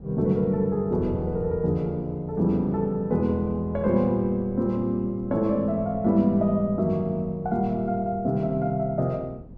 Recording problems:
wind on the microphone; below 240 Hz, SNR 18 dB

